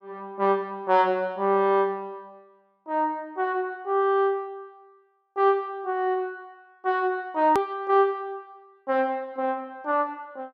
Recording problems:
hard cut with a click; at 7.5 s

